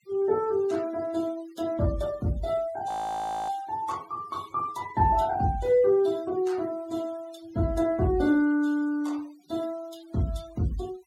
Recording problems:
denoising artefacts; signal-to-artefact ratio 22 dB
audio freezing; at 3 s for 0.5 s

